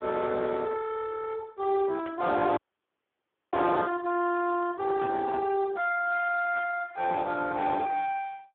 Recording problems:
telephone audio; 260 Hz to 3.5 kHz, Speex
distortion; soft clipping, signal-to-distortion ratio 12 dB
static burst; at 2 s, at 5 s and at 6.5 s; peak -13 dB vs average level
frozen audio; at 2.5 s for 1 s

